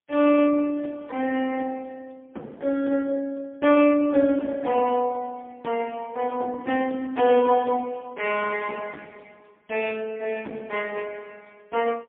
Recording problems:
phone line; 220 Hz to 3.2 kHz, AMR-NB, then MP3

